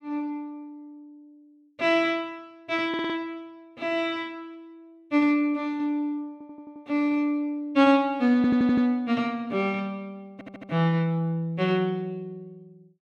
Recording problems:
stutter; 4 times, first at 3 s

